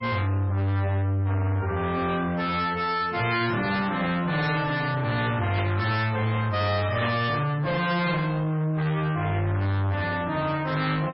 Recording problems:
lossy compression; MP3, log-spectral distance 3 dB, nothing above 5.3 kHz
distorted audio; soft clipping, signal-to-distortion ratio 7 dB
static burst; at 5.5 s and at 7 s; peak -5 dB vs average level

